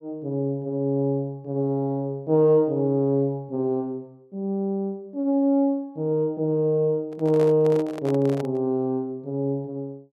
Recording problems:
handling noise; from 7 to 8.5 s; peak -7 dB vs average level

